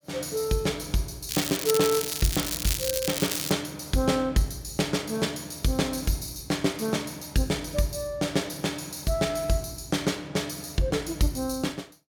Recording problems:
crackling; from 1.5 to 3.5 s; loose cable, SNR 2 dB

